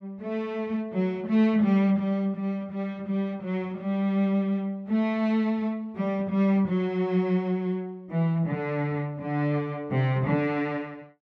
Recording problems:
none

